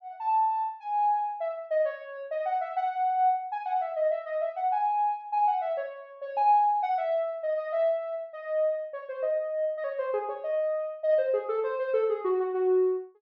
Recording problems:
none

